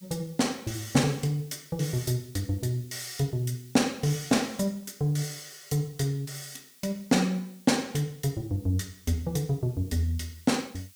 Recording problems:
background hiss; slope +4 dB per octave, SNR 24 dB

